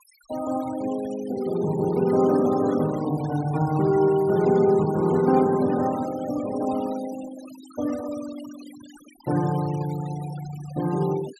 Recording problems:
denoising artefacts; signal-to-artefact ratio 19 dB

